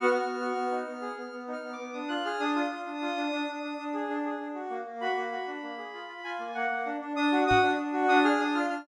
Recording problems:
microphone bump; at 7.5 s; peak 0 dB vs average level

